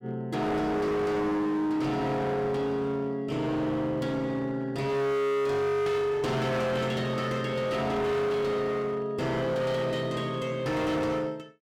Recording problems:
distorted audio; hard clipping, signal-to-distortion ratio 8 dB

